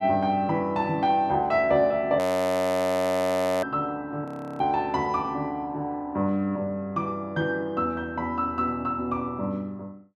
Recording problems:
audio freezing; at 2 s for 1.5 s and at 4.5 s

